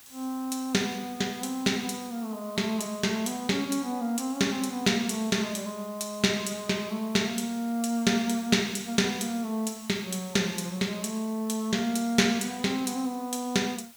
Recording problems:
background hiss; slope 0 dB per octave, SNR 20 dB

